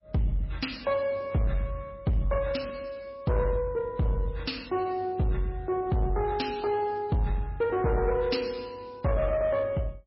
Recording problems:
codec artefacts; MP3, log-spectral distance 3 dB, nothing above 5.5 kHz
distorted audio; soft clipping, signal-to-distortion ratio 11 dB

